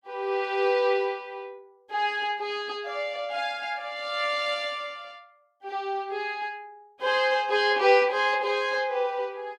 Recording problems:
none

